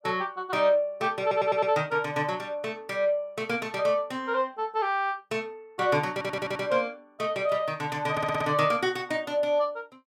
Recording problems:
audio stuttering; at 1 s, at 6 s and at 8 s

